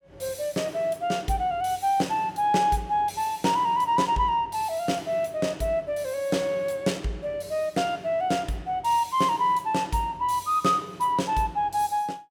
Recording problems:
none

